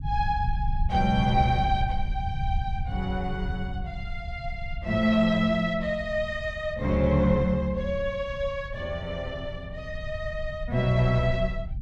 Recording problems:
rumble; below 86 Hz, SNR 8 dB

